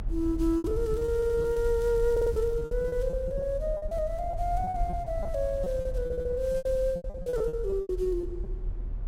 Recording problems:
rumble; below 60 Hz, strongest tone 38 Hz, SNR 8 dB
packet loss; 17% of the sound replaced, filled with repeated pitch periods
crackle; from 1 to 2.5 s; loose cable, SNR 28 dB
audio stuttering; at 1 s, at 2 s and at 6 s

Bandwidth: 16 kHz